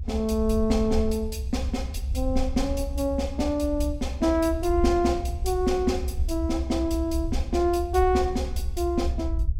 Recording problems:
rumble; below 72 Hz, SNR 5 dB

